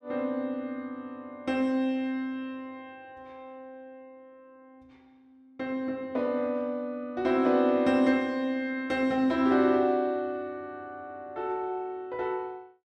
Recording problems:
none

